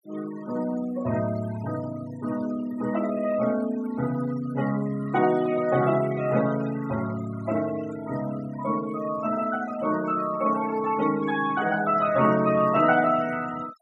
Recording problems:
noise reduction artefacts; signal-to-artefact ratio 17 dB

